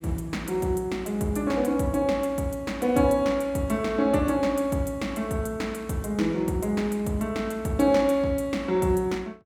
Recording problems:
none

